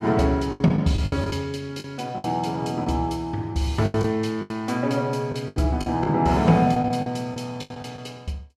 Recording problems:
lost packets; 11% of the sound replaced, filled with the last packet

